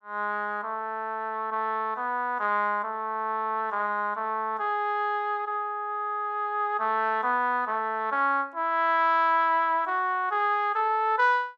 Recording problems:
none

